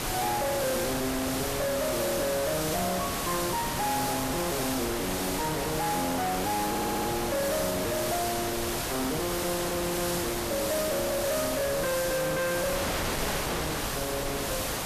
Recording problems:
distortion; soft clipping, signal-to-distortion ratio 6 dB
hiss; SNR 5 dB
wind noise; below 2.4 kHz, SNR 3 dB
audio stuttering; at 6.5 s

